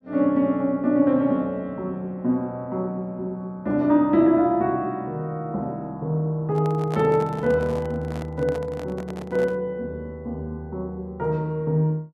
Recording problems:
handling noise; from 6.5 to 9.5 s; peak -6 dB vs average level

